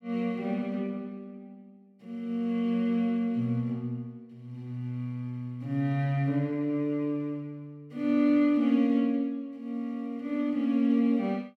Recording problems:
none

